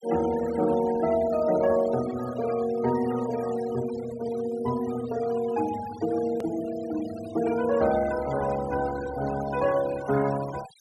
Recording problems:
noise reduction artefacts; signal-to-artefact ratio 15 dB
hard cut with a click; at 6.5 s

